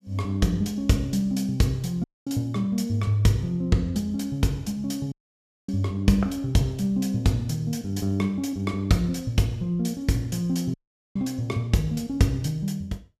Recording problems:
audio cutting out; at 2 s, at 5 s for 0.5 s and at 11 s

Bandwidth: 15.5 kHz